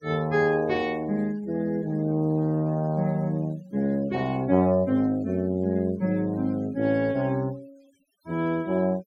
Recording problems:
noise reduction artefacts; signal-to-artefact ratio 27 dB

